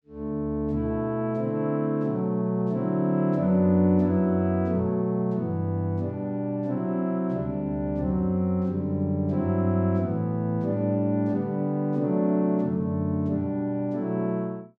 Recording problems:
none

